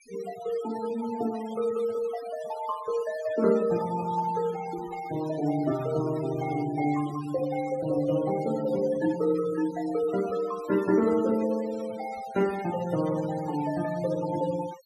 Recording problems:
noise reduction artefacts; signal-to-artefact ratio 16 dB

